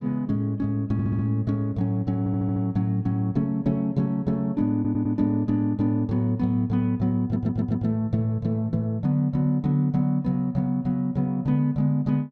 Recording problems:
audio stuttering; 4 times, first at 1 s

